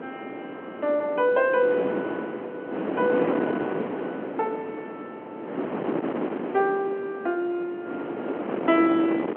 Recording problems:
phone line; 260 Hz to 3.3 kHz, G.711
wind noise; below 660 Hz, SNR 5 dB

